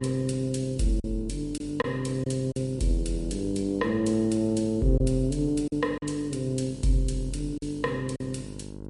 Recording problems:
codec artefacts; MP3, log-spectral distance 2 dB, nothing above 10.7 kHz
hum; 50 Hz, harmonics up to 1 kHz, SNR 15 dB
lost packets; 4% of the sound replaced, filled with silence

